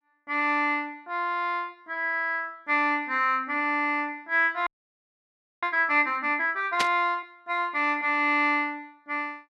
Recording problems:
frozen audio; at 4.5 s for 1 s
static burst; at 7 s; peak +3 dB vs average level

